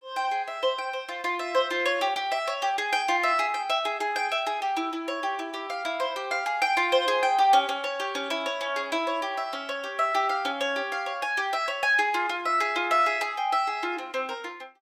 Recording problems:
none

